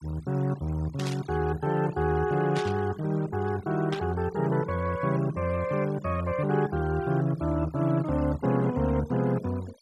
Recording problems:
denoising artefacts; signal-to-artefact ratio 20 dB
static burst; at 1 s, at 2.5 s and at 4 s; peak -6 dB vs average level

